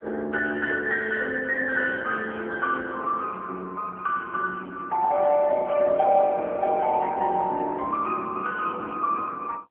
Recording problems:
telephone audio; 240 Hz to 3.1 kHz, AMR-NB

